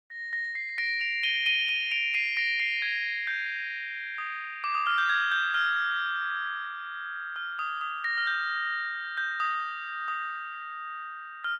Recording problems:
lossy compression; Opus, log-spectral distance 3 dB, nothing above 13.7 kHz

